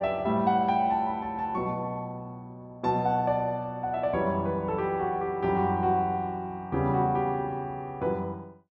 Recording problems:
none

